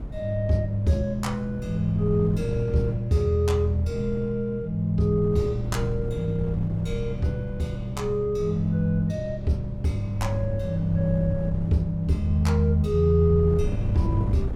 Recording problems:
wind noise; below 140 Hz, SNR 10 dB

